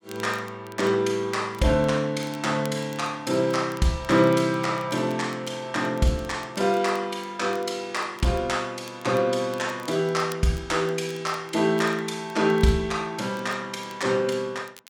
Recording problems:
crackling; vinyl, SNR 25 dB

